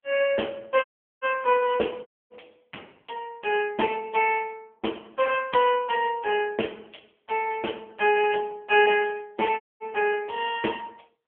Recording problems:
phone line; 260 Hz to 3.2 kHz, AMR-NB
audio cutting out; at 1 s, at 2 s and at 9.5 s

